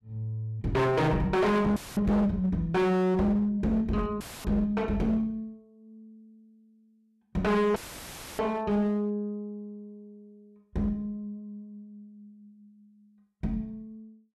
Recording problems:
distorted audio; hard clipping, uneven, signal-to-distortion ratio 6 dB
audio cutting out; at 2 s, at 4 s and at 8 s for 0.5 s; filled with static

